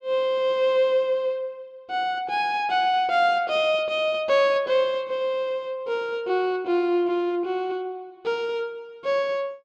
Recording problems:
none

